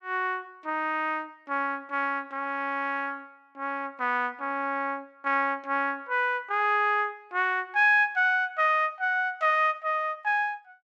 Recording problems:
none

